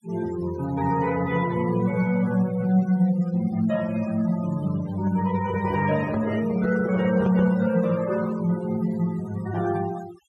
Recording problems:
noise reduction artefacts; signal-to-artefact ratio 16 dB
handling noise; from 5 to 7.5 s; peak -3 dB vs average level

